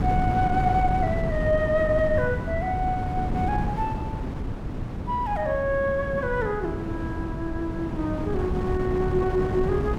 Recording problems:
wind on the microphone; below 270 Hz, SNR 3 dB

